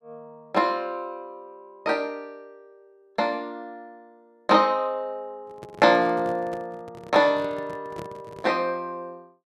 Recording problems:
microphone handling noise; from 5.5 to 8.5 s; peak -9 dB vs average level

